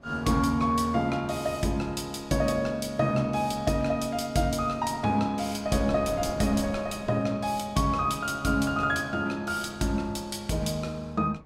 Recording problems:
wind noise; below 440 Hz, SNR 19 dB

